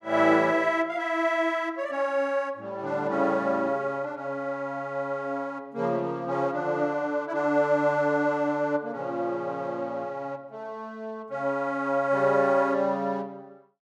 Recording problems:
none

